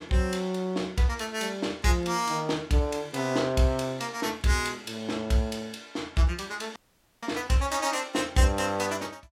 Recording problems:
dropout; at 7 s

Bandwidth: 16.5 kHz